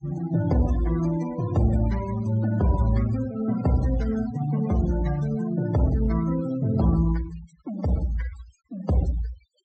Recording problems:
treble cut off; nothing above 8 kHz
denoising artefacts; signal-to-artefact ratio 15 dB

